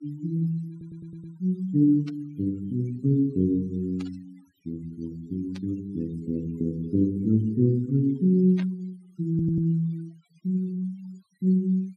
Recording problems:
denoising artefacts; signal-to-artefact ratio 26 dB
audio stuttering; at 0.5 s and at 9.5 s
static burst; 4 times, first at 2 s; peak -11 dB vs average level

